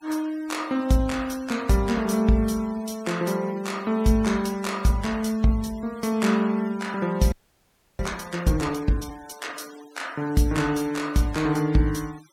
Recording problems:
noise reduction artefacts; signal-to-artefact ratio 22 dB
frozen audio; at 7.5 s for 0.5 s

